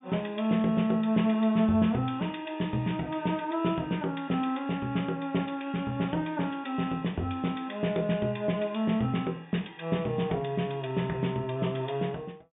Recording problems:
treble missing; nothing above 3.6 kHz

